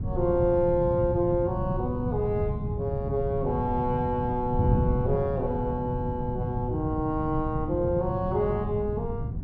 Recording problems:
wind on the microphone; below 160 Hz, SNR 3 dB

